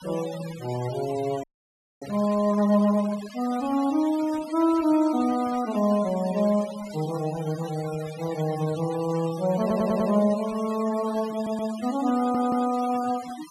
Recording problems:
noise reduction artefacts; signal-to-artefact ratio 16 dB
frozen audio; at 1.5 s for 0.5 s
stutter; at 9.5 s, at 11 s and at 12 s

